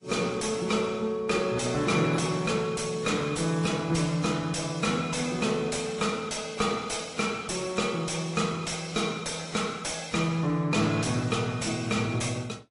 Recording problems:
lossy codec; AAC, then MP3, log-spectral distance 5 dB, nothing above 10.7 kHz
distorted audio; soft clipping, signal-to-distortion ratio 11 dB

